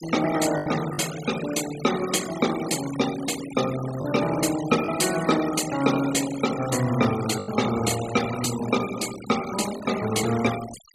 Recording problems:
denoising artefacts; signal-to-artefact ratio 11 dB
packet loss; 2% of the sound replaced, filled with the last packet

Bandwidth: 14.5 kHz